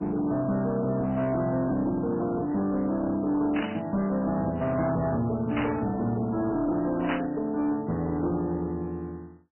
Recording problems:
lossy compression; MP3, log-spectral distance 3 dB, nothing above 7.8 kHz
distorted audio; hard clipping, uneven, signal-to-distortion ratio 11 dB
static burst; at 3.5 s, at 5.5 s and at 7 s; peak -1 dB vs average level

